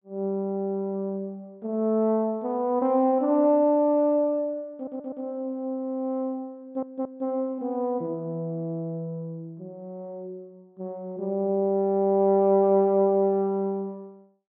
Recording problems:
treble missing; nothing above 4 kHz
stutter; at 5 s and at 6.5 s

